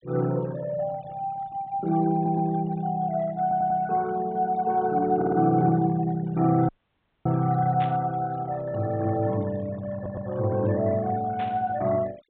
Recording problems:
treble missing; nothing above 4 kHz
noise reduction artefacts; signal-to-artefact ratio 20 dB
stutter; 4 times, first at 2 s
dropout; at 6.5 s for 0.5 s
burst of static; at 8 s and at 11 s; peak -9 dB vs average level

